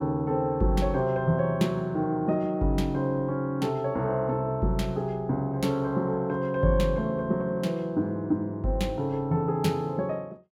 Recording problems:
none

